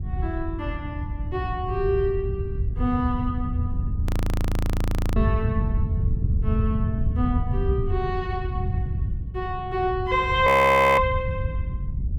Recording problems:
wind on the microphone; below 110 Hz, SNR 2 dB
audio freezing; at 4 s for 1 s and at 10 s for 0.5 s

